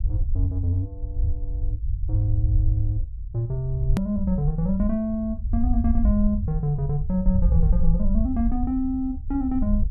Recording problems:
rumble; below 68 Hz, SNR 2 dB
hard cut with a click; at 4 s

